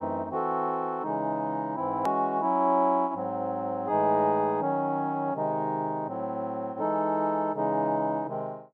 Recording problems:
click at an edit; at 2 s

